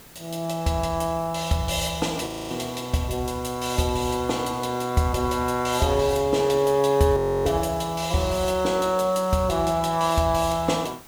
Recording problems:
background hiss; slope -3 dB per octave, SNR 22 dB
frozen audio; at 2.5 s and at 7 s

